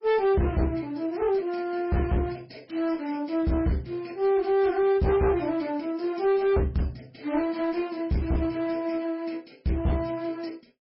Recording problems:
codec artefacts; MP3, log-spectral distance 3 dB, nothing above 5.3 kHz
distorted audio; hard clipping, uneven, signal-to-distortion ratio 9 dB

